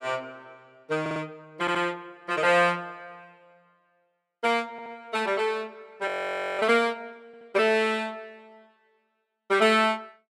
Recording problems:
audio stuttering; 4 times, first at 1 s
frozen audio; at 6 s for 0.5 s

